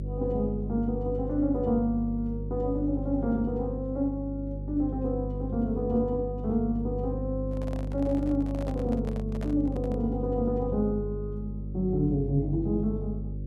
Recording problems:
electrical hum; 50 Hz, harmonics up to 450 Hz, SNR 5 dB
handling noise; from 7.5 to 10 s; peak -8 dB vs average level

